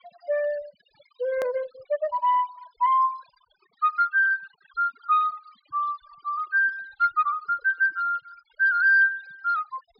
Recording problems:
treble missing; nothing above 5.1 kHz
denoising artefacts; signal-to-artefact ratio 23 dB
click at an edit; at 1.5 s

